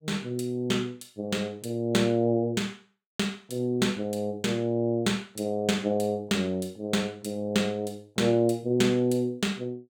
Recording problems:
none

